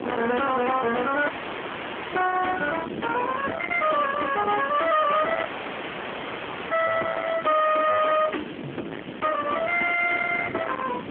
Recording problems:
phone line; 300 Hz to 3.3 kHz, AMR-NB
distorted audio; soft clipping, signal-to-distortion ratio 8 dB
hiss; SNR 16 dB
wind on the microphone; below 1.9 kHz, SNR 9 dB
dropout; at 1.5 s for 1 s and at 5.5 s for 1.5 s

